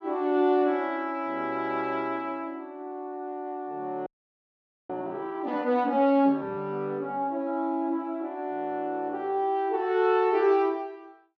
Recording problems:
frozen audio; at 4 s for 1 s

